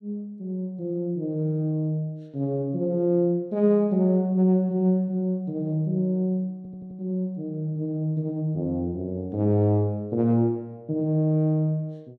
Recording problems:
stutter; at 6.5 s

